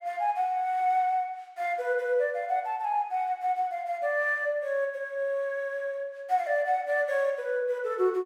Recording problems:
none

